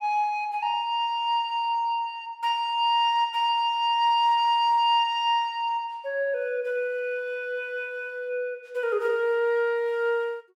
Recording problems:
none

